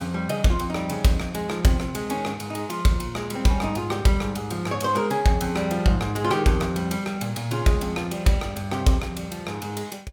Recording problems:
none

